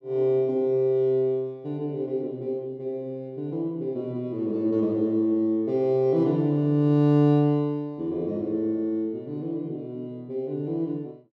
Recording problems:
none

